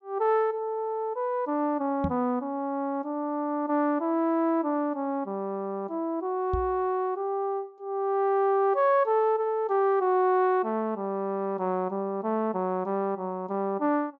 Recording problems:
treble cut off; nothing above 8 kHz
microphone thump; at 2 s and at 6.5 s; peak +1 dB vs average level

